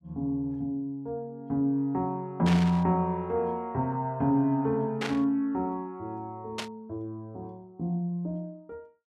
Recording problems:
burst of static; at 2.5 s, at 5 s and at 6.5 s; peak 0 dB vs average level

